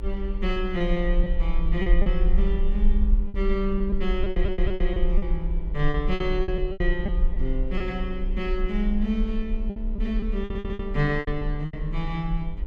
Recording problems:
hum; 50 Hz, harmonics up to 2 kHz, SNR 18 dB
rumble; below 44 Hz, SNR 0 dB
lost packets; 9% of the sound replaced, filled with repeated pitch periods
audio stuttering; at 4 s and at 10 s

